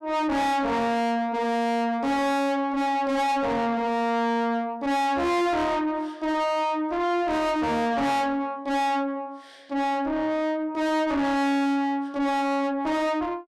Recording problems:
distorted audio; soft clipping, signal-to-distortion ratio 5 dB

